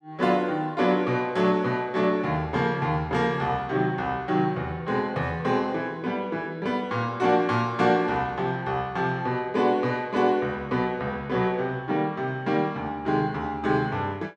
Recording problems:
none

